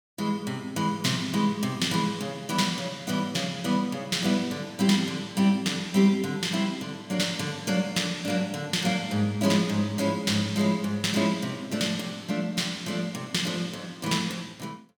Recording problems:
none

